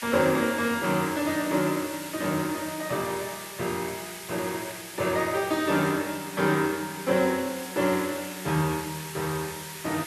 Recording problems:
background hiss; SNR 11 dB

